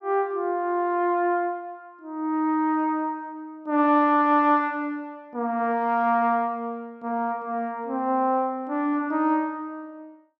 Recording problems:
none

